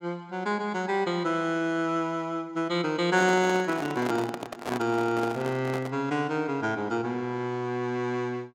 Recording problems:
microphone handling noise; from 3 to 6 s; peak 0 dB vs average level

